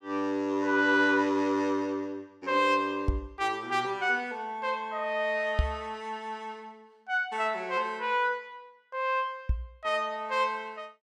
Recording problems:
microphone bump; at 3 s, at 5.5 s and at 9.5 s; peak +6 dB vs average level

